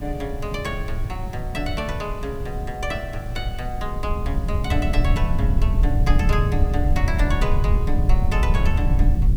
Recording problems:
hiss; slope -4 dB per octave, SNR 19 dB
rumble; below 86 Hz, SNR -5 dB

